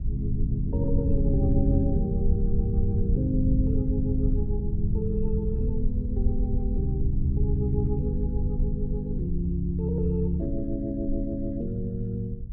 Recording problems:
rumble; below 84 Hz, SNR 1 dB

